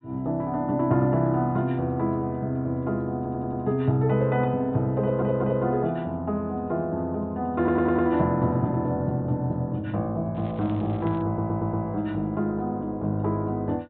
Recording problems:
low-pass filter; nothing above 4 kHz
audio stuttering; 4 times, first at 3 s
crackle; at 10 s; loose cable, SNR 27 dB

